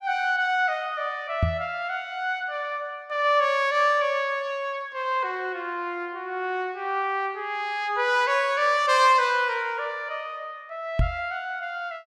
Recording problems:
knock on the microphone; at 1.5 s and at 11 s; peak +5 dB vs average level

